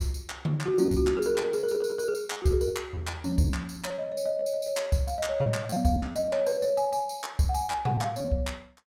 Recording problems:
packet loss; 18% of the sound replaced, filled with repeated pitch periods

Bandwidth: 16.5 kHz